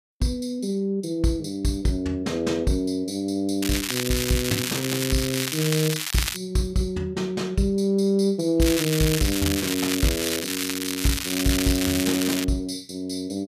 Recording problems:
crackling; from 3.5 to 6.5 s and from 8.5 to 12 s; loose cable, SNR 2 dB

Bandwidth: 14.5 kHz